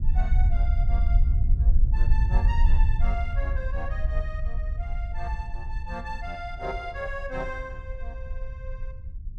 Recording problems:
low-frequency rumble; below 60 Hz, SNR -10 dB

